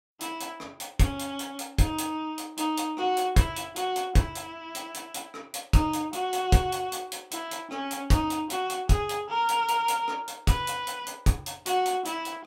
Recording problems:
none

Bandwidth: 16.5 kHz